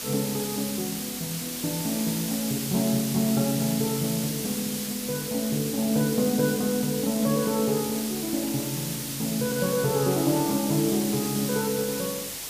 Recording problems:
hum; 50 Hz, harmonics up to 500 Hz, SNR 26 dB
hiss; slope +1 dB per octave, SNR 4 dB

